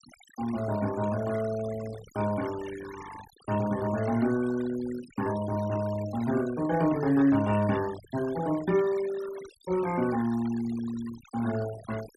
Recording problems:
noise reduction artefacts; signal-to-artefact ratio 16 dB

